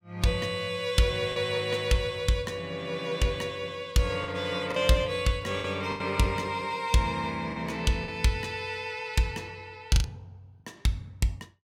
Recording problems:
lost packets; 4% of the sound replaced, filled with the last packet

